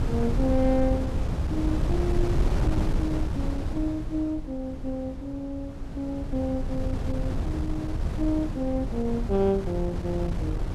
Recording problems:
wind noise; below 140 Hz, SNR 0 dB

